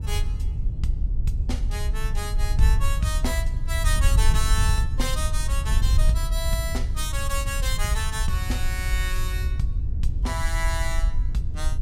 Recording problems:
wind on the microphone; below 70 Hz, SNR -4 dB

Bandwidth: 16.5 kHz